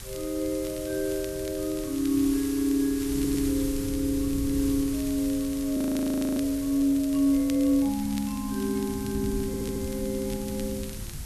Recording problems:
hiss; slope 0 dB per octave, SNR 13 dB
wind noise; below 130 Hz, SNR 13 dB
crackling; vinyl, SNR 21 dB
audio stuttering; at 3 s and at 9.5 s
frozen audio; at 6 s for 0.5 s

